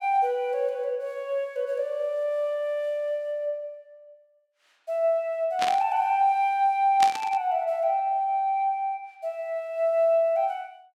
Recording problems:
static burst; at 5.5 s and at 7 s; peak 0 dB vs average level

